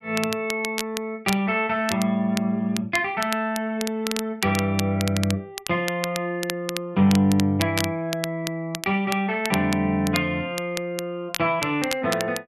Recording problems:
crackling; vinyl, SNR 9 dB

